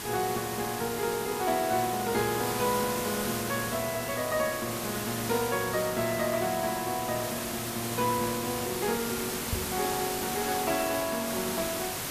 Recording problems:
background hiss; slope -2 dB per octave, SNR 3 dB
microphone thump; at 9.5 s; peak +3 dB vs average level

